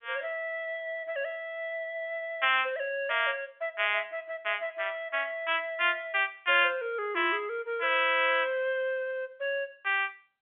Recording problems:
telephone audio; 240 Hz to 3.5 kHz, G.711

